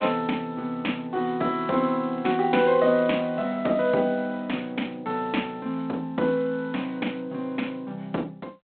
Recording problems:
phone line; 190 Hz to 3.9 kHz, G.726

